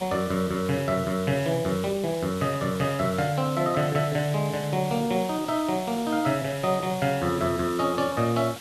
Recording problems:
background hiss; SNR 14 dB

